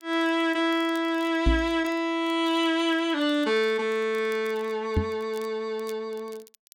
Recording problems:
crackling; vinyl, SNR 28 dB
microphone bump; at 1.5 s and at 5 s; peak +5 dB vs average level

